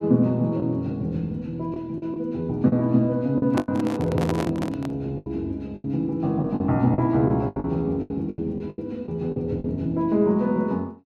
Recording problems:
packet loss; 9% of the sound replaced, filled with the last packet
microphone handling noise; from 3.5 to 5 s; peak +1 dB vs average level

